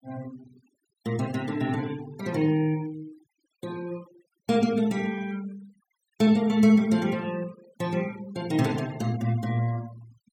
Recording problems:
noise reduction artefacts; signal-to-artefact ratio 21 dB

